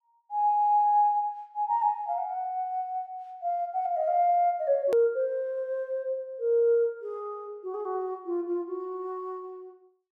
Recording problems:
hard cut with a click; at 5 s

